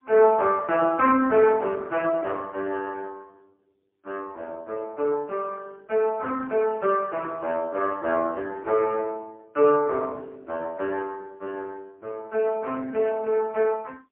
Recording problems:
telephone audio; 280 Hz to 3.4 kHz, AMR-NB, then MP3

